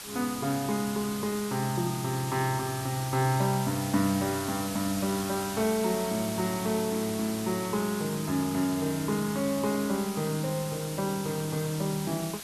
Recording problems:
background hiss; slope 0 dB per octave, SNR 8 dB

